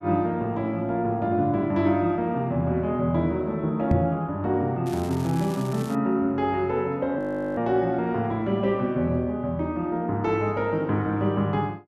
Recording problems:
microphone thump; at 4 s; peak +6 dB vs average level
crackling; from 5 to 6 s; loose cable, SNR 19 dB
audio freezing; at 7 s

